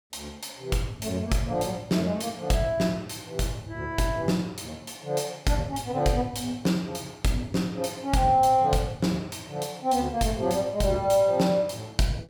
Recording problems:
none

